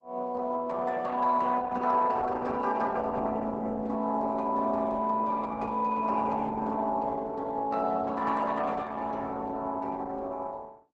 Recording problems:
lossy compression; Opus, log-spectral distance 3 dB, nothing above 7.8 kHz

